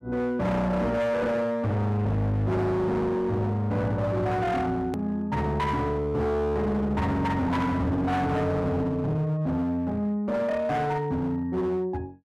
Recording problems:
distorted audio; hard clipping, signal-to-distortion ratio 8 dB
hard cut with a click; at 5 s

